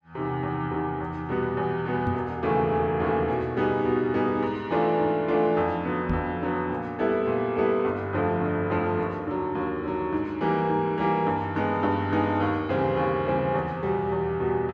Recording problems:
microphone bump; at 2 s and at 6 s; peak +1 dB vs average level

